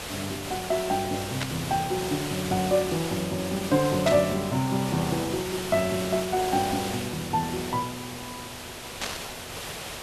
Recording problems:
background hiss; slope -2 dB per octave, SNR 7 dB
static burst; at 1.5 s, at 4 s and at 9 s; peak +2 dB vs average level

